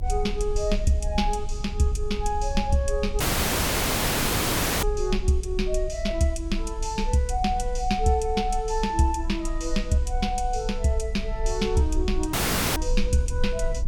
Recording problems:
low-frequency rumble; below 48 Hz, strongest tone 30 Hz, SNR 6 dB
audio cutting out; at 3 s for 1.5 s and at 12 s

